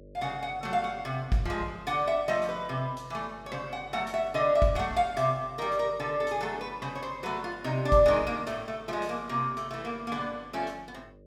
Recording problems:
hum; 50 Hz, harmonics up to 600 Hz, SNR 23 dB

